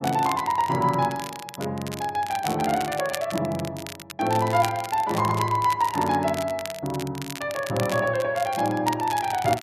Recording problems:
crackle; vinyl, SNR 13 dB

